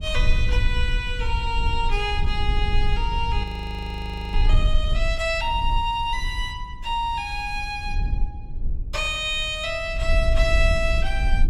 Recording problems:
low-frequency rumble; below 58 Hz, SNR 1 dB
audio freezing; at 3.5 s for 1 s

